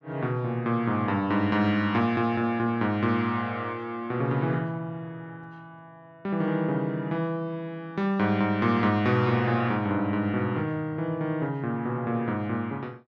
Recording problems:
none

